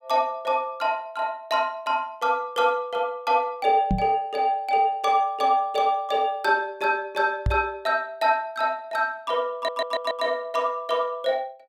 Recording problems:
knock on the microphone; at 4 s and at 7.5 s; peak +3 dB vs average level
audio stuttering; at 9.5 s

